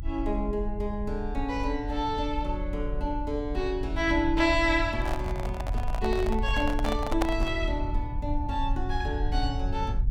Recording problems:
rumble; below 62 Hz, SNR 4 dB
microphone handling noise; from 5 to 7.5 s; peak +4 dB vs average level

